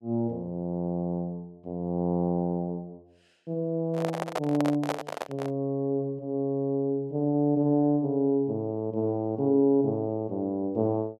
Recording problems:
microphone handling noise; from 4 to 5.5 s; peak +2 dB vs average level

